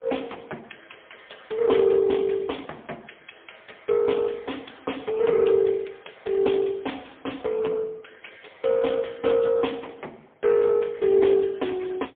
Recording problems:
telephone audio; 280 Hz to 3.6 kHz, AMR-NB, then MP3

